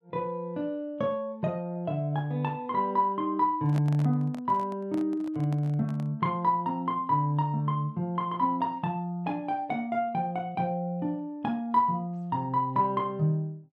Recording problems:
microphone handling noise; from 3.5 to 6 s; peak -6 dB vs average level

